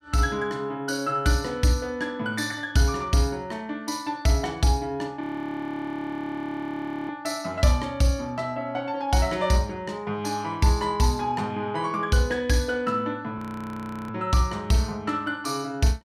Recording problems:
audio freezing; at 5 s for 2 s and at 13 s for 0.5 s

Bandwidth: 15.5 kHz